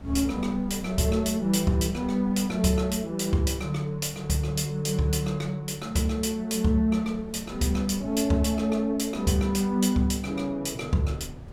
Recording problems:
wind noise; below 190 Hz, SNR 21 dB

